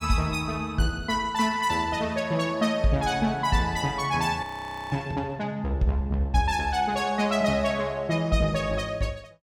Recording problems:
frozen audio; at 4.5 s

